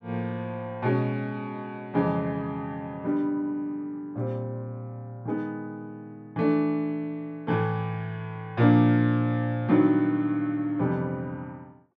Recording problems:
none

